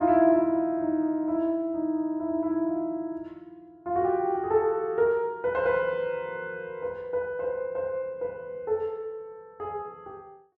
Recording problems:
none

